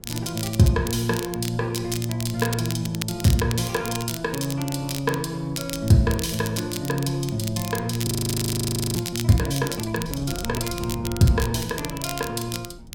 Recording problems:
wind noise; below 170 Hz, SNR 18 dB
crackling; vinyl, SNR 10 dB
frozen audio; at 8 s for 1 s

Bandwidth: 16.5 kHz